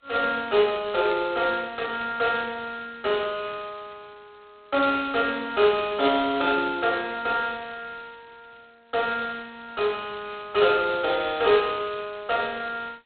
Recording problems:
phone line; 280 Hz to 3.9 kHz, G.726

